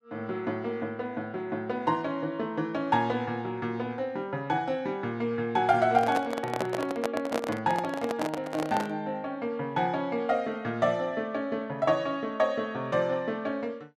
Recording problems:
handling noise; from 6 to 9 s; peak +3 dB vs average level

